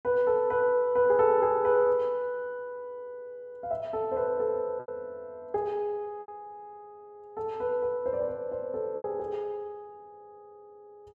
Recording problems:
lost packets; 2% of the sound replaced, filled with repeated pitch periods

